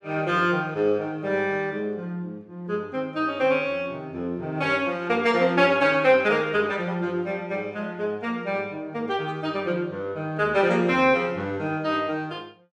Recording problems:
none

